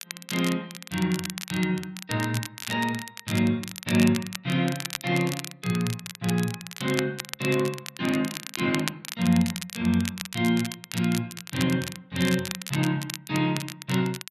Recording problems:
crackling; vinyl, SNR 9 dB

